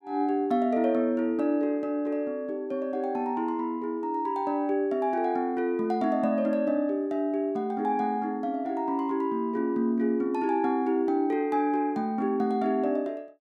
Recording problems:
none

